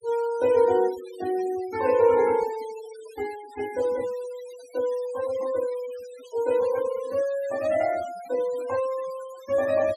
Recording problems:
denoising artefacts; signal-to-artefact ratio 19 dB

